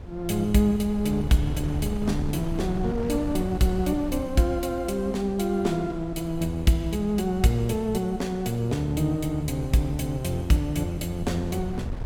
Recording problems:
wind on the microphone; below 130 Hz, SNR 12 dB

